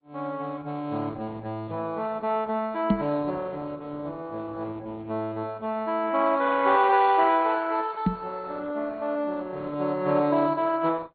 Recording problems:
treble cut off; nothing above 4.2 kHz
lossy compression; Opus, log-spectral distance 3 dB
microphone thump; at 3 s and at 8 s; peak +8 dB vs average level

